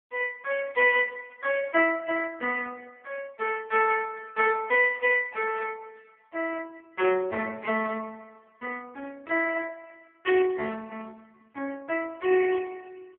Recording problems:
telephone audio; 280 Hz to 3.3 kHz, AMR-NB

